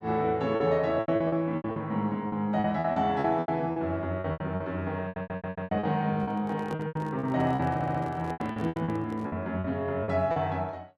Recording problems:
packet loss; 15% of the sound replaced, filled with repeated pitch periods
stutter; at 5 s and at 7.5 s
microphone handling noise; from 6 to 9.5 s; peak -6 dB vs average level

